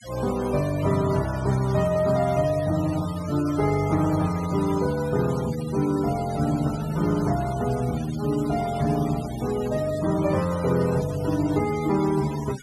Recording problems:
denoising artefacts; signal-to-artefact ratio 16 dB

